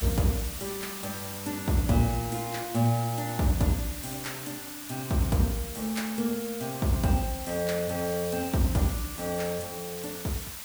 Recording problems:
background hiss; slope +1 dB per octave, SNR 8 dB

